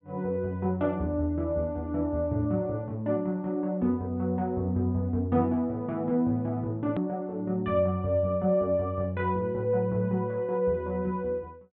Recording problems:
treble missing; nothing above 4 kHz
hard cut with a click; at 7 s

